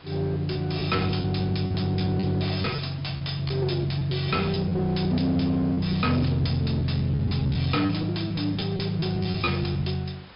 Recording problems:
low-pass filter; nothing above 5.5 kHz
distortion; hard clipping, uneven, signal-to-distortion ratio 9 dB
hiss; SNR 22 dB
lost packets; 9% of the sound replaced, filled with repeated pitch periods

